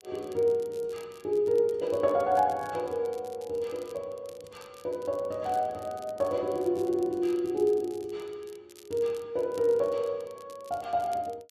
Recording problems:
crackling; vinyl, SNR 25 dB

